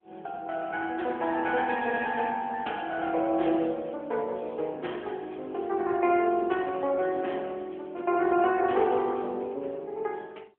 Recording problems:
telephone audio; 280 Hz to 3.3 kHz, AMR-NB

